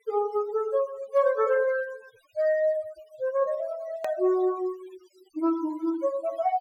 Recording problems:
noise reduction artefacts; signal-to-artefact ratio 19 dB
click at an edit; at 4 s

